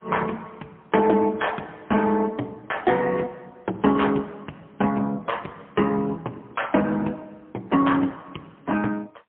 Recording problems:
telephone audio; 240 Hz to 3.3 kHz, AMR-NB, then MP3

